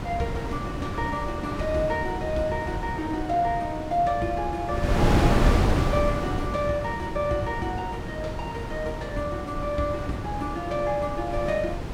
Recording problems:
wind on the microphone; below 440 Hz, SNR 1 dB

